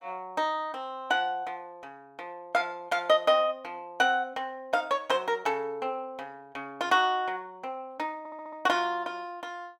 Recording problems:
audio stuttering; at 8 s

